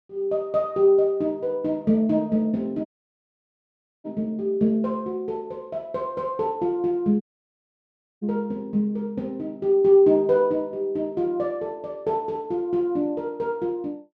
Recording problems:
audio cutting out; at 3 s for 1 s and at 7 s for 1 s

